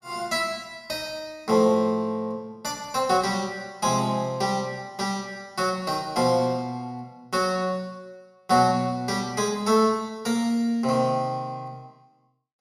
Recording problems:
none

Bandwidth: 15.5 kHz